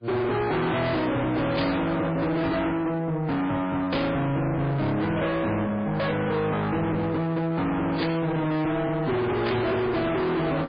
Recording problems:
codec artefacts; MP3, log-spectral distance 3 dB, nothing above 4.5 kHz
distorted audio; soft clipping, signal-to-distortion ratio 6 dB
static burst; 4 times, first at 1.5 s; peak -2 dB vs average level

